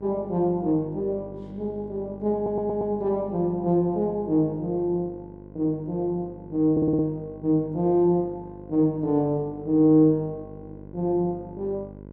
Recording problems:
hum; 50 Hz, harmonics up to 1.1 kHz, SNR 19 dB
stutter; at 2.5 s and at 6.5 s

